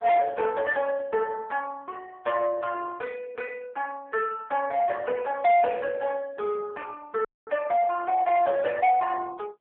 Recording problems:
telephone audio; 340 Hz to 3.4 kHz, AMR-NB
distortion; soft clipping, signal-to-distortion ratio 11 dB
audio cutting out; at 7.5 s

